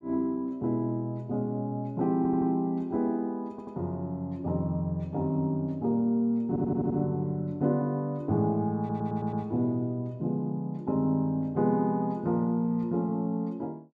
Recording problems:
audio stuttering; 4 times, first at 2 s

